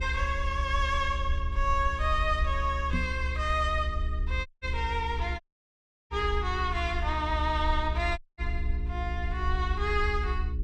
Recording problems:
hum; 60 Hz, harmonics up to 420 Hz, SNR 13 dB
rumble; below 70 Hz, SNR 3 dB
microphone thump; at 3 s; peak +2 dB vs average level
audio cutting out; at 4.5 s, at 5.5 s for 0.5 s and at 8 s

